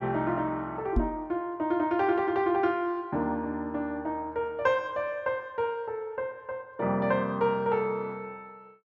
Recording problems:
knock on the microphone; at 1 s; peak +6 dB vs average level

